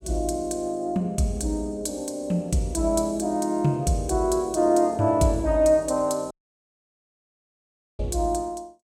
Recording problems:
audio cutting out; at 6.5 s for 1.5 s

